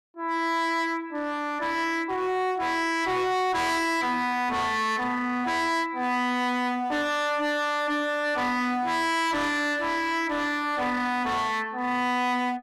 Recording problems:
distorted audio; hard clipping, uneven, signal-to-distortion ratio 7 dB

